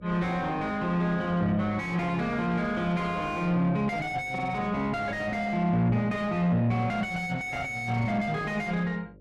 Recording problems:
distorted audio; soft clipping, signal-to-distortion ratio 6 dB
hum; 50 Hz, harmonics up to 600 Hz, SNR 24 dB

